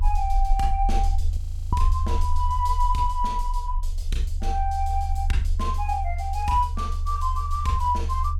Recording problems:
low-frequency rumble; below 76 Hz, strongest tone 30 Hz, SNR 1 dB
audio freezing; at 1.5 s

